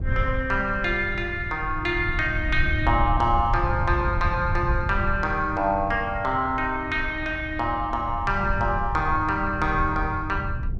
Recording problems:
rumble; below 100 Hz, SNR 6 dB

